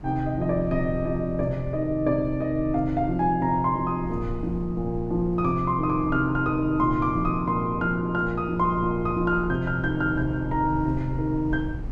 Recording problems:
rumble; below 96 Hz, SNR 13 dB

